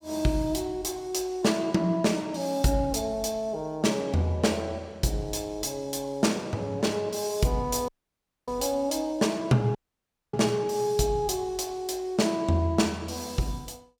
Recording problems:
dropout; at 8 s for 0.5 s and at 10 s for 0.5 s

